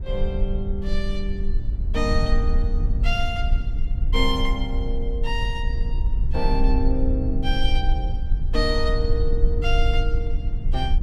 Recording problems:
rumble; below 54 Hz, strongest tone 20 Hz, SNR -3 dB

